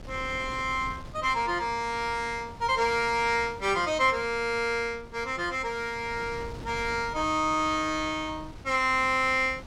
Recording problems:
wind noise; below 380 Hz, SNR 17 dB

